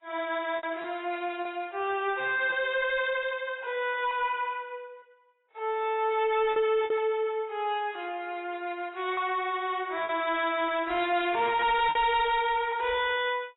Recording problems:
lossy compression; AAC, log-spectral distance 3 dB, nothing above 3.8 kHz
distorted audio; soft clipping, signal-to-distortion ratio 10 dB
packet loss; 4% of the sound replaced, filled with repeated pitch periods

